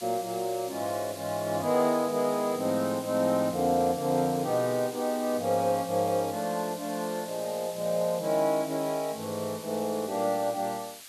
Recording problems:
background hiss; slope +3 dB per octave, SNR 14 dB

